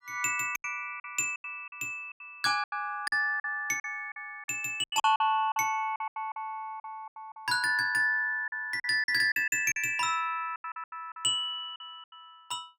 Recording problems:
packet loss; 14% of the sound replaced, filled with silence

